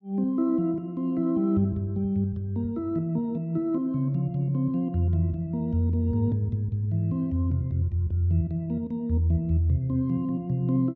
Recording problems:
none

